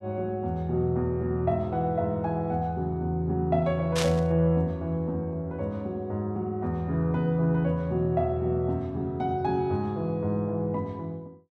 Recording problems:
burst of static; at 4 s; peak +2 dB vs average level

